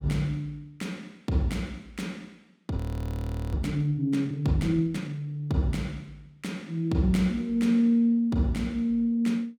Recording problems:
audio freezing; at 3 s for 1 s

